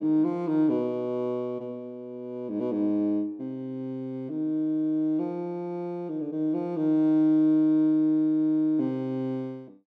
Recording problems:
none

